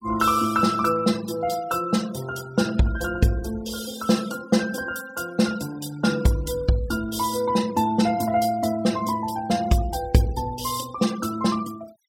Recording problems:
denoising artefacts; signal-to-artefact ratio 17 dB

